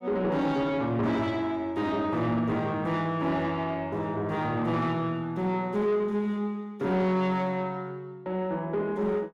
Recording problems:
distorted audio; soft clipping, signal-to-distortion ratio 12 dB

